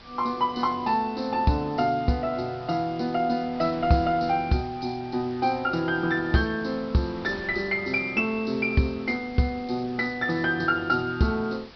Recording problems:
low-pass filter; nothing above 5.5 kHz
background hiss; SNR 24 dB
wind noise; below 1.7 kHz, SNR 23 dB

